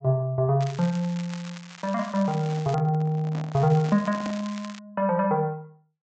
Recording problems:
treble missing; nothing above 8 kHz
crackling; from 0.5 to 3 s and from 3.5 to 5 s; loose cable, SNR 18 dB
microphone handling noise; from 2 to 4.5 s; peak -7 dB vs average level

